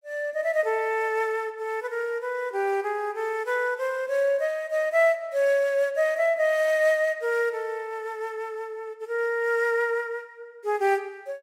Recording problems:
none

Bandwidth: 16 kHz